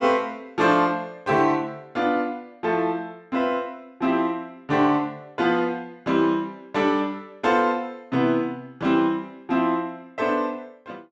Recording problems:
none

